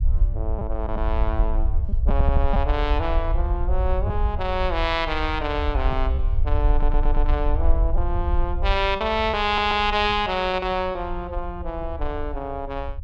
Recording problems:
low-frequency rumble; below 58 Hz, SNR 1 dB
lost packets; 3% of the sound replaced, filled with repeated pitch periods
audio stuttering; at 2 s, at 6.5 s and at 9.5 s

